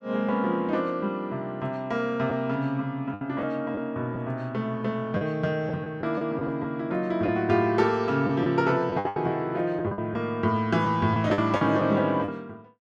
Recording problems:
lost packets; 6% of the sound replaced, filled with the last packet

